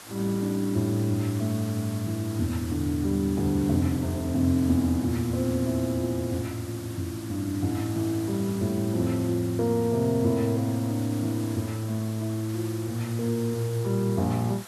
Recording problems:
background hiss; SNR 16 dB

